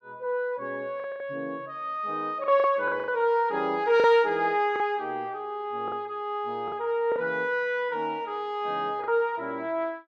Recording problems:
packet loss; 6% of the sound replaced, filled with the last packet

